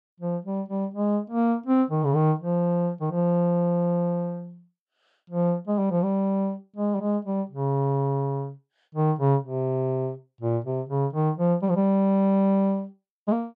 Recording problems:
none

